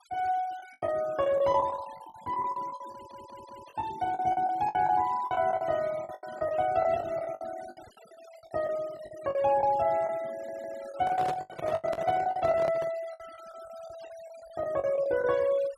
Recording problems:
noise reduction artefacts; signal-to-artefact ratio 21 dB
lost packets; 15% of the sound replaced, filled with the last packet
audio stuttering; at 3 s and at 10 s
microphone handling noise; from 11 to 13 s; peak -1 dB vs average level

